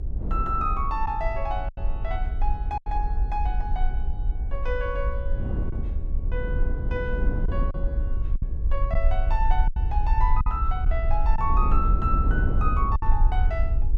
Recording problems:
hum; 50 Hz, harmonics up to 450 Hz, SNR 17 dB
rumble; below 54 Hz, SNR -3 dB
wind noise; below 270 Hz, SNR 6 dB
packet loss; 4% of the sound replaced, filled with silence

